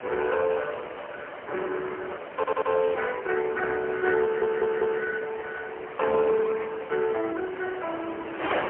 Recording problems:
phone line; 260 Hz to 2.6 kHz, AMR-NB, then MP3
wind noise; below 1.8 kHz, SNR 12 dB
stutter; at 2.5 s and at 4 s

